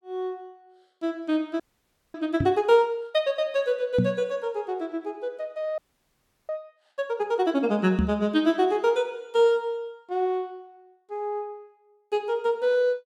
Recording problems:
audio freezing; at 1.5 s for 0.5 s and at 6 s for 0.5 s
knock on the microphone; at 2.5 s, at 4 s and at 8 s; peak +7 dB vs average level

